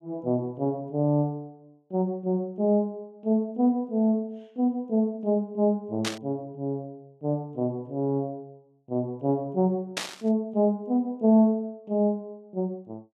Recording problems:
burst of static; at 6 s and at 10 s; peak +2 dB vs average level

